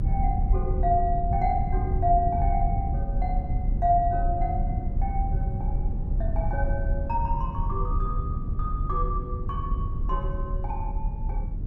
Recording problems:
rumble; below 86 Hz, strongest tone 34 Hz, SNR -1 dB

